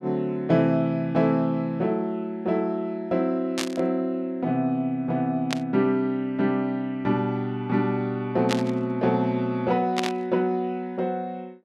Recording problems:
burst of static; 4 times, first at 3.5 s; peak +2 dB vs average level

